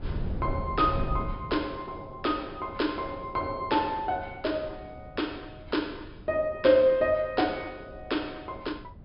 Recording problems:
treble missing; nothing above 5.5 kHz
wind noise; below 150 Hz, SNR 13 dB

